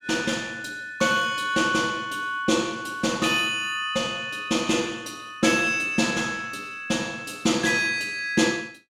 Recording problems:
none

